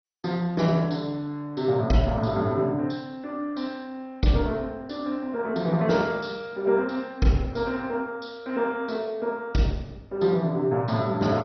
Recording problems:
lossy codec; MP2, log-spectral distance 3 dB, nothing above 5.8 kHz

